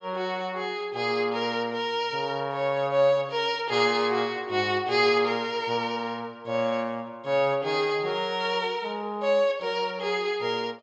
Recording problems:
low-pass filter; nothing above 7.9 kHz

